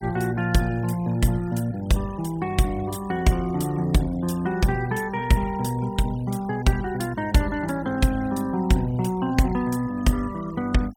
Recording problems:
denoising artefacts; signal-to-artefact ratio 21 dB

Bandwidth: 18 kHz